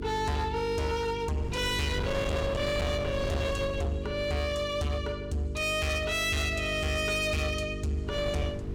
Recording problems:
distorted audio; hard clipping, signal-to-distortion ratio 7 dB
hum; 50 Hz, harmonics up to 450 Hz, SNR 8 dB
wind noise; below 550 Hz, SNR 8 dB

